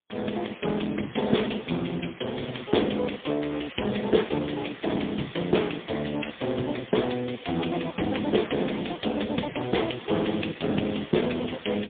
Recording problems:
phone line; 110 Hz to 3.6 kHz, AMR-NB, then MP3

